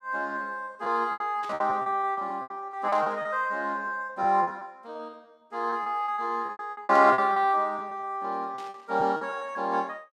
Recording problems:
packet loss; 16% of the sound replaced, filled with repeated pitch periods
burst of static; 4 times, first at 1.5 s; peak -14 dB vs average level

